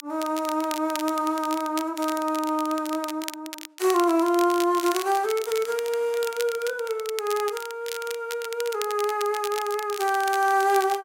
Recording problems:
crackling; vinyl, SNR 12 dB

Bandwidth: 16 kHz